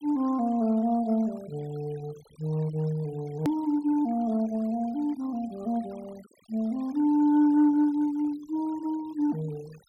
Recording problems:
noise reduction artefacts; signal-to-artefact ratio 26 dB
click at an edit; at 3.5 s

